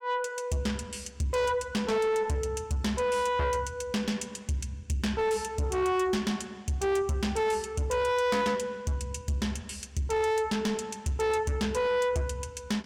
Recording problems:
distortion; soft clipping, signal-to-distortion ratio 7 dB

